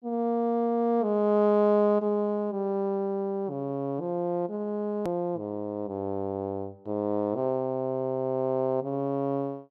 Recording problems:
click at an edit; at 5 s

